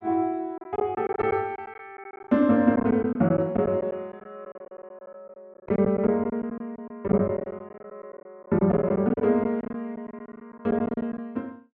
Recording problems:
lost packets; 13% of the sound replaced, filled with silence

